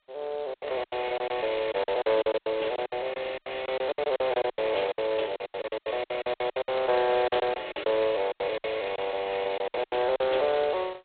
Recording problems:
telephone audio; 320 Hz to 3.9 kHz, G.726
lost packets; 18% of the sound replaced, filled with silence

